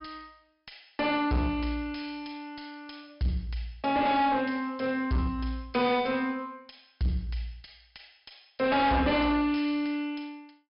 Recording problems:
treble missing; nothing above 5.5 kHz
distorted audio; soft clipping, signal-to-distortion ratio 7 dB

